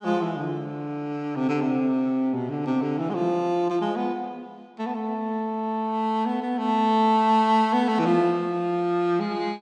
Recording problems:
none

